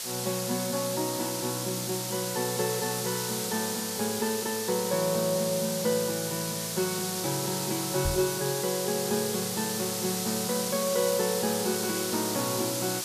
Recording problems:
hiss; slope +2 dB per octave, SNR 1 dB
microphone thump; at 8 s; peak +1 dB vs average level

